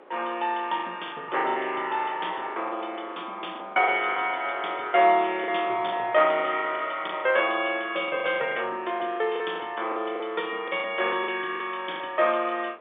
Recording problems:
telephone audio; 300 Hz to 3.6 kHz, G.711
wind on the microphone; below 1.1 kHz, SNR 22 dB
lost packets; 11% of the sound replaced, filled with the last packet

